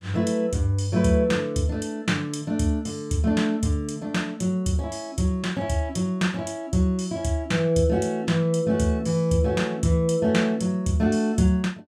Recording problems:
none

